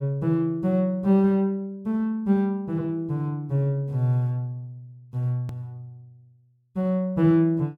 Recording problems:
hard cut with a click; at 5.5 s

